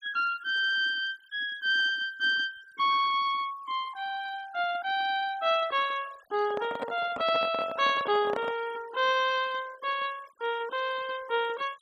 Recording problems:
noise reduction artefacts; signal-to-artefact ratio 20 dB
microphone handling noise; from 6.5 to 8.5 s; peak -3 dB vs average level

